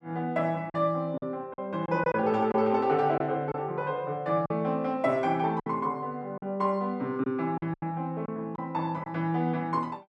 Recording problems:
lost packets; 6% of the sound replaced, filled with silence

